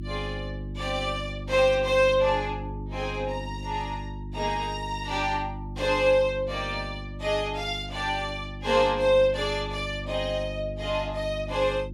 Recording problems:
hum; 50 Hz, harmonics up to 350 Hz, SNR 11 dB

